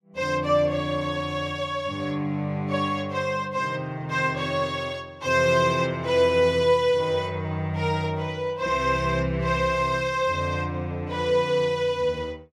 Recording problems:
none

